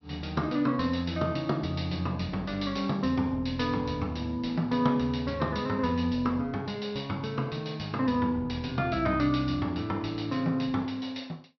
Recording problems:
low-pass filter; nothing above 5.9 kHz

